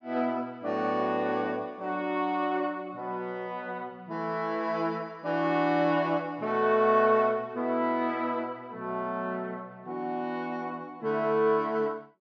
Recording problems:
low-pass filter; nothing above 8 kHz

